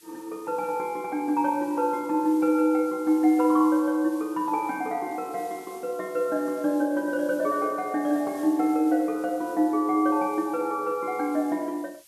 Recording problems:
hiss; slope +3 dB per octave, SNR 24 dB

